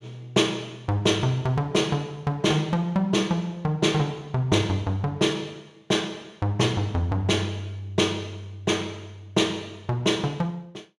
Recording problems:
none

